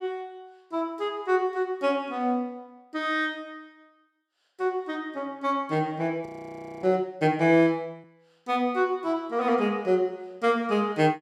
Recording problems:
frozen audio; at 6.5 s for 0.5 s

